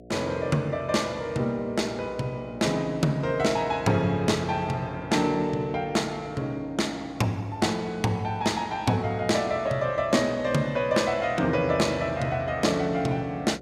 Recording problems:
electrical hum; 60 Hz, harmonics up to 720 Hz, SNR 18 dB

